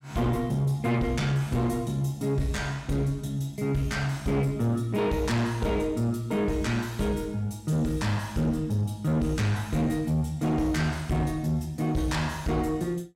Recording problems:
distortion; soft clipping, signal-to-distortion ratio 10 dB

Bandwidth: 16 kHz